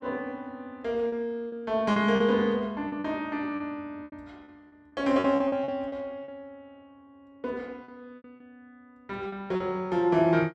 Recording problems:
packet loss; 10% of the sound replaced, filled with repeated pitch periods

